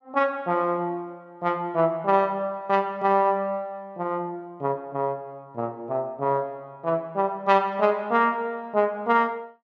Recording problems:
none

